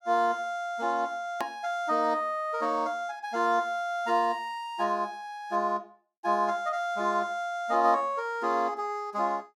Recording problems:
click at an edit; at 1.5 s

